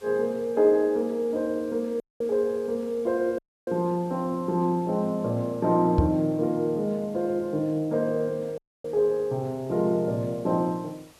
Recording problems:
hiss; slope -2 dB per octave, SNR 28 dB
audio cutting out; at 2 s, at 3.5 s and at 8.5 s
knock on the microphone; at 6 s; peak +7 dB vs average level

